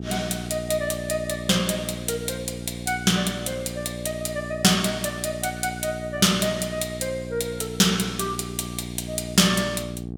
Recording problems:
electrical hum; 60 Hz, harmonics up to 780 Hz, SNR 10 dB

